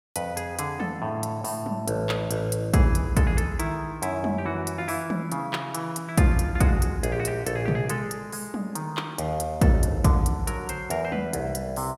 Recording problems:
none

